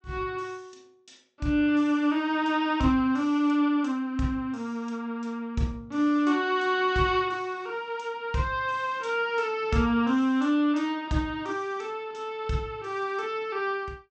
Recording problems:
treble cut off; nothing above 8 kHz

